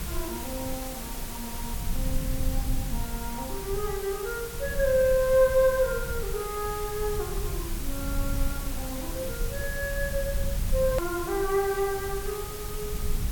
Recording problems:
hiss; slope -2 dB per octave, SNR 8 dB
rumble; below 70 Hz, SNR 7 dB
click at an edit; at 11 s

